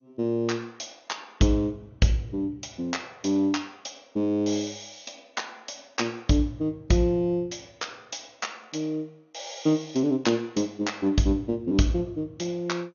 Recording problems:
lossy codec; MP2, log-spectral distance 6 dB, nothing above 6.7 kHz

